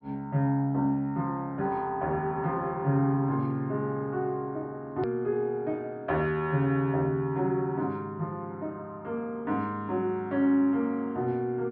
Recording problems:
treble missing; nothing above 5.5 kHz
edit click; at 5 s

